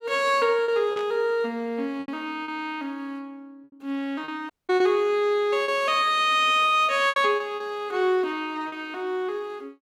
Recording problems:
packet loss; 6% of the sound replaced, filled with repeated pitch periods
static burst; at 1 s; peak -12 dB vs average level
audio cutting out; at 4.5 s

